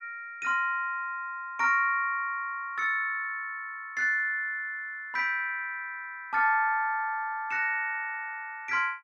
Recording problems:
none

